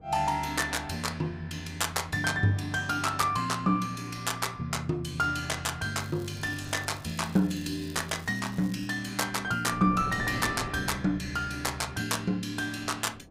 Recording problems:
wind on the microphone; below 390 Hz, SNR 18 dB
crackling; from 6 to 9 s; loose cable, SNR 22 dB

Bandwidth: 15.5 kHz